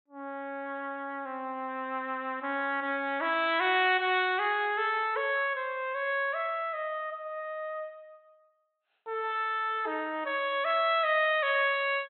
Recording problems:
low-pass filter; nothing above 3.9 kHz

